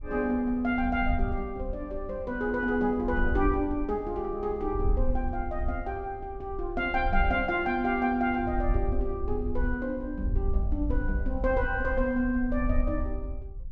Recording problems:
wind noise; below 62 Hz, SNR 5 dB

